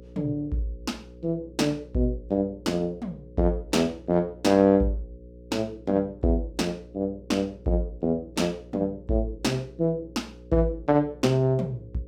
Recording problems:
mains hum; 60 Hz, harmonics up to 540 Hz, SNR 20 dB

